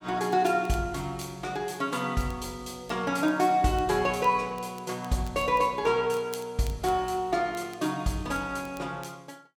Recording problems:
crackle; vinyl, SNR 25 dB

